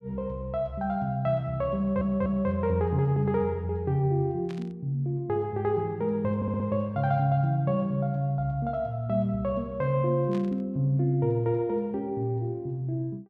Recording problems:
stutter; at 2 s and at 6.5 s
static burst; at 4.5 s and at 10 s; peak -14 dB vs average level

